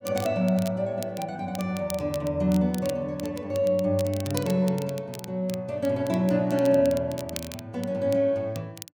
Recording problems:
crackle; vinyl, SNR 16 dB

